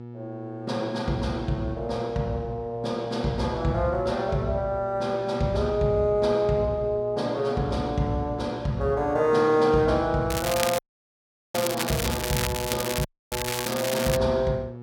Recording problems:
hum; 60 Hz, harmonics up to 960 Hz, SNR 14 dB
crackling; from 10 to 14 s; loose cable, SNR 5 dB
audio cutting out; at 11 s for 1 s and at 13 s

